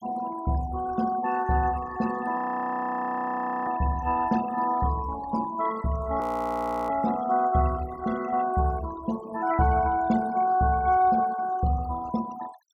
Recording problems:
noise reduction artefacts; signal-to-artefact ratio 15 dB
frozen audio; at 2.5 s for 1.5 s and at 6 s for 0.5 s

